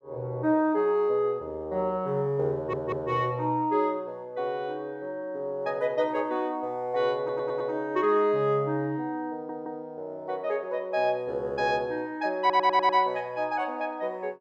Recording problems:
stutter; 4 times, first at 2.5 s

